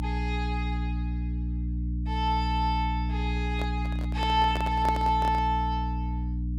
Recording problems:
mains hum; 60 Hz, harmonics up to 300 Hz, SNR 2 dB
handling noise; from 3.5 to 5.5 s; peak -1 dB vs average level

